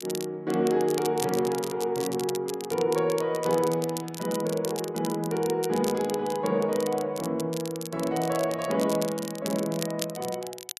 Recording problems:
crackling; vinyl, SNR 11 dB

